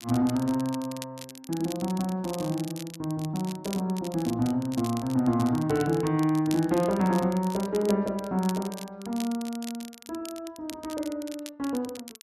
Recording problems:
crackling; vinyl, SNR 15 dB

